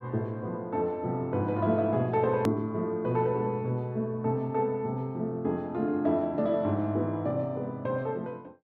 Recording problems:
edit click; at 2.5 s

